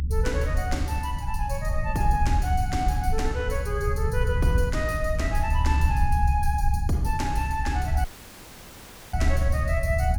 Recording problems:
rumble; below 74 Hz, SNR -2 dB
audio cutting out; at 8 s for 1 s; filled with static

